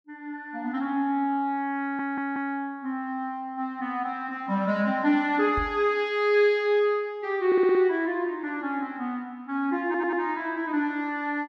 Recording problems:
audio stuttering; at 2 s, at 7.5 s and at 10 s
knock on the microphone; at 5.5 s; peak -4 dB vs average level

